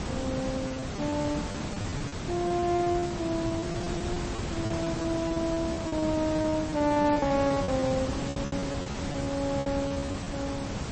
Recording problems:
codec artefacts; MP3, log-spectral distance 7 dB, nothing above 8 kHz
hiss; slope -5 dB per octave, SNR 4 dB
packet loss; 15% of the sound replaced, filled with repeated pitch periods

